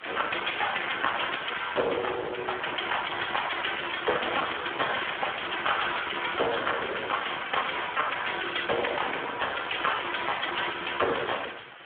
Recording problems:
phone line; 320 Hz to 3.5 kHz, Speex
distortion; soft clipping, signal-to-distortion ratio 9 dB
hiss; SNR 16 dB

